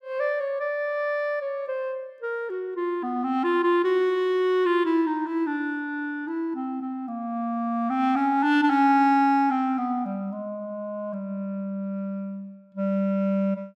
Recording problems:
none

